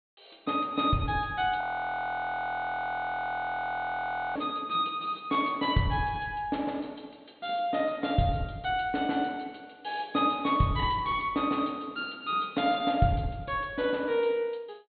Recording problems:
treble missing; nothing above 4.3 kHz
audio freezing; at 1.5 s for 2.5 s

